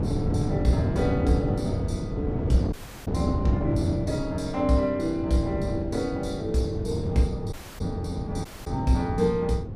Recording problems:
wind on the microphone; below 260 Hz, SNR 2 dB
dropout; at 2.5 s, at 7.5 s and at 8.5 s

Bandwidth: 15 kHz